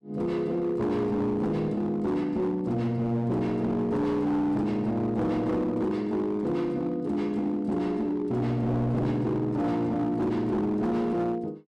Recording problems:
distorted audio; hard clipping, signal-to-distortion ratio 11 dB

